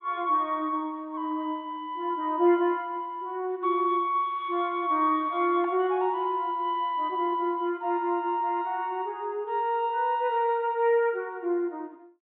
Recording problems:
treble missing; nothing above 4 kHz

